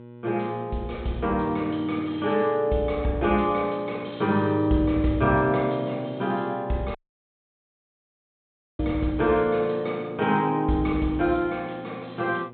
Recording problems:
low-pass filter; nothing above 4 kHz
electrical hum; 60 Hz, harmonics up to 1.4 kHz, SNR 19 dB
dropout; at 7 s for 2 s

